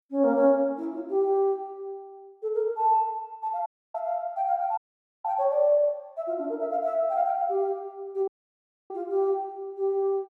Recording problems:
dropout; at 3.5 s, at 5 s and at 8.5 s for 0.5 s

